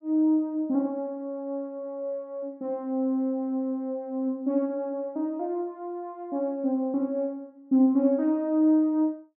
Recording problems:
none

